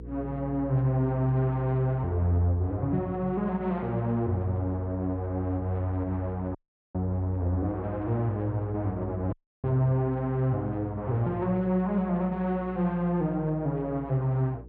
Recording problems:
hum; 60 Hz, harmonics up to 480 Hz, SNR 16 dB
dropout; at 6.5 s and at 9.5 s

